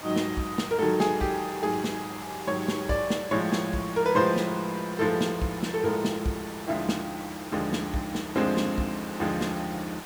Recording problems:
hiss; SNR 12 dB

